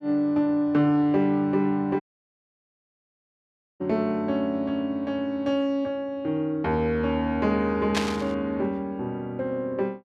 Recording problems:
audio cutting out; at 2 s for 2 s
burst of static; at 8 s; peak +3 dB vs average level

